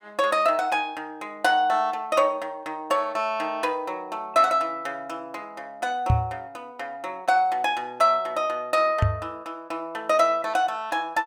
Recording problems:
microphone thump; at 6 s and at 9 s; peak +6 dB vs average level

